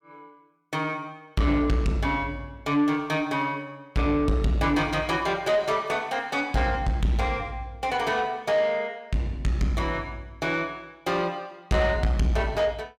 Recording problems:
distorted audio; soft clipping, signal-to-distortion ratio 10 dB

